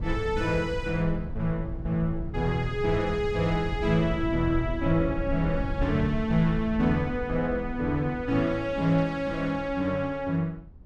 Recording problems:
rumble; below 100 Hz, SNR 9 dB

